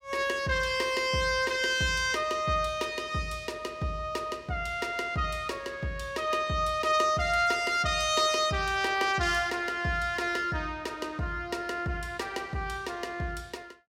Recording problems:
none

